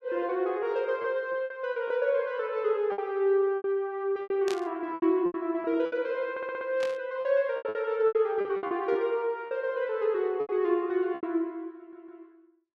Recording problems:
packet loss; 10% of the sound replaced, filled with repeated pitch periods
static burst; at 4.5 s and at 7 s; peak -5 dB vs average level
audio stuttering; at 6.5 s and at 12 s

